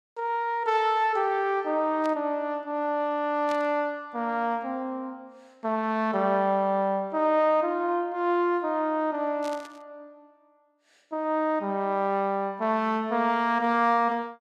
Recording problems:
burst of static; at 2 s, at 3.5 s and at 9.5 s; peak -11 dB vs average level

